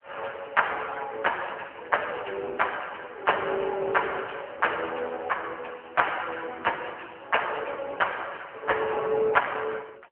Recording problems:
phone line; 340 Hz to 3 kHz, AMR-NB

